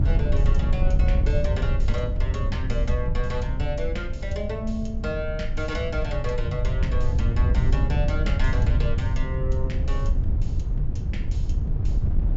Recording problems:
treble missing; nothing above 8 kHz
electrical hum; 50 Hz, harmonics up to 350 Hz, SNR 16 dB
wind on the microphone; below 84 Hz, SNR -5 dB

